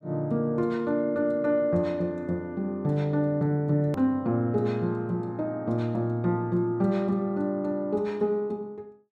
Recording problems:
hard cut with a click; at 4 s

